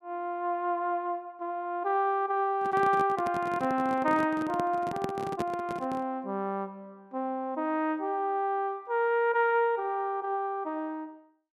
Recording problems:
microphone handling noise; from 2.5 to 6 s; peak -1 dB vs average level

